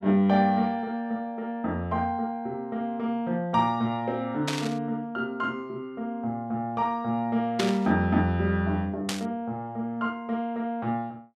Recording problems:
burst of static; at 4.5 s, at 7.5 s and at 9 s; peak +3 dB vs average level

